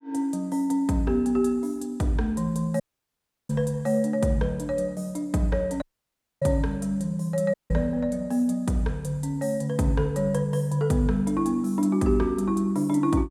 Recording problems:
audio cutting out; at 3 s for 0.5 s, at 6 s for 0.5 s and at 7.5 s

